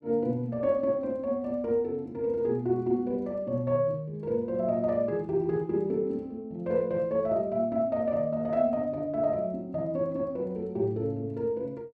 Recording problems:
none

